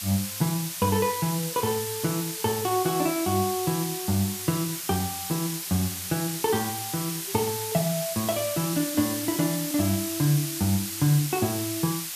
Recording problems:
hiss; slope +4 dB per octave, SNR 4 dB

